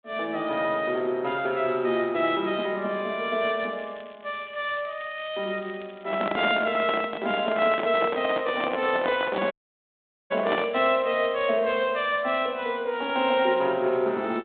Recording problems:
phone line; 220 Hz to 3.7 kHz, G.726
crackle; at 4 s, from 4.5 to 7 s and from 8 to 11 s; loose cable, SNR 27 dB
microphone handling noise; from 6 to 11 s; peak +1 dB vs average level
audio cutting out; at 9.5 s for 1 s

